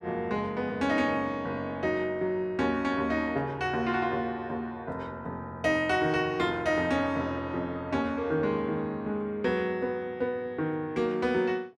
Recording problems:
none

